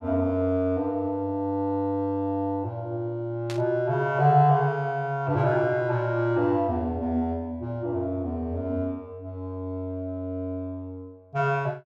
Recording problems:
static burst; at 3.5 s; peak -7 dB vs average level

